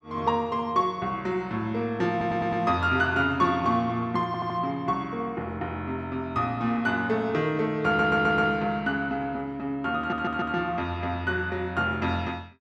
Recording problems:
stutter; 4 times, first at 2 s

